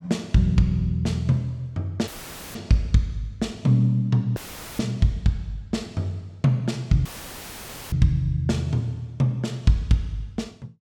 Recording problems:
audio cutting out; at 2 s, at 4.5 s and at 7 s for 1 s; filled with static

